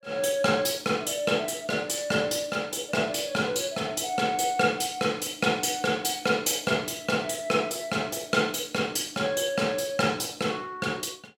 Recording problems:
none

